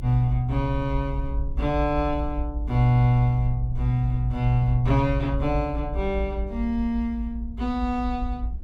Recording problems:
low-frequency rumble; below 58 Hz, strongest tone 56 Hz, SNR 6 dB

